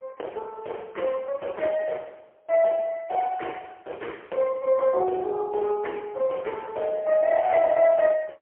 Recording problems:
telephone audio; 320 Hz to 3.2 kHz, AMR-NB, then MP3

